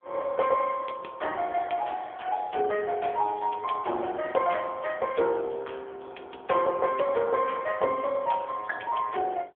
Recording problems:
telephone audio; 320 Hz to 3.3 kHz, AMR-NB

